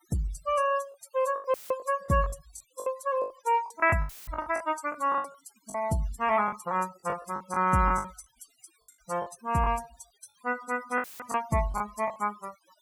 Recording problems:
noise reduction artefacts; signal-to-artefact ratio 19 dB
packet loss; 13% of the sound replaced, filled with the last packet
audio cutting out; at 1.5 s, at 4 s and at 11 s; filled with static

